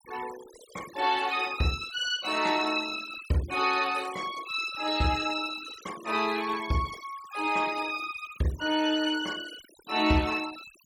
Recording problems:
denoising artefacts; signal-to-artefact ratio 16 dB

